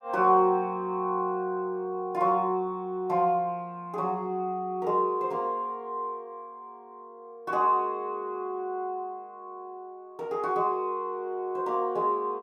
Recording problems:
none

